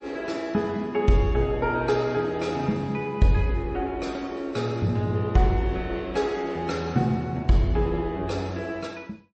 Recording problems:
lossy compression; MP3, log-spectral distance 2 dB, nothing above 8.2 kHz

